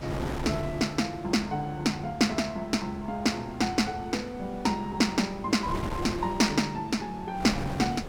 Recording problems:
wind on the microphone; below 730 Hz, SNR 11 dB

